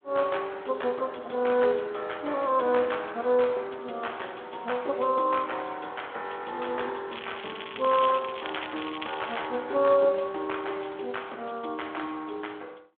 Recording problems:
telephone audio; 260 Hz to 3.5 kHz, Speex
crackle; from 7 to 9.5 s; loose cable, SNR 10 dB

